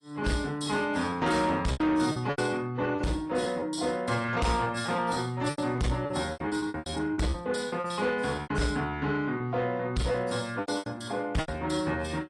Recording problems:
lossy codec; AAC, log-spectral distance 3 dB
distorted audio; soft clipping, signal-to-distortion ratio 11 dB
packet loss; 12% of the sound replaced, filled with repeated pitch periods

